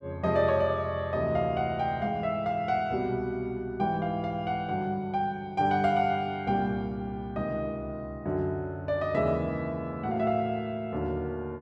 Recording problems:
none

